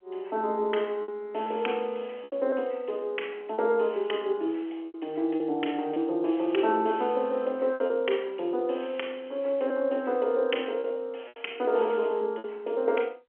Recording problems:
phone line; 300 Hz to 3.2 kHz, G.711
lost packets; 5% of the sound replaced, filled with repeated pitch periods

